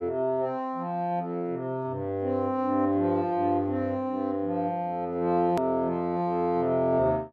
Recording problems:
edit click; at 5.5 s

